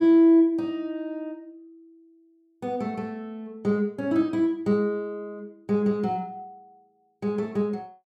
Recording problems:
none

